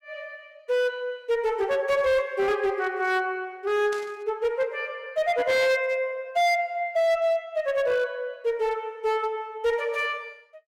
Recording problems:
distorted audio; hard clipping, signal-to-distortion ratio 11 dB
static burst; at 4 s and at 5.5 s; peak -10 dB vs average level

